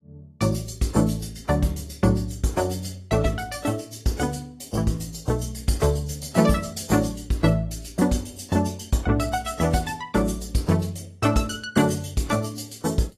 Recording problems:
lossy codec; AAC, log-spectral distance 4 dB

